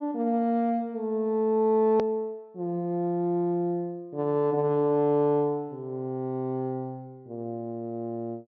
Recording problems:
treble cut off; nothing above 6.1 kHz
edit click; at 2 s

